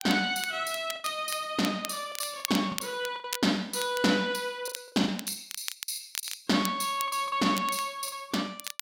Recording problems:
crackle; vinyl, SNR 10 dB
lost packets; 10% of the sound replaced, filled with the last packet

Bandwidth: 16.5 kHz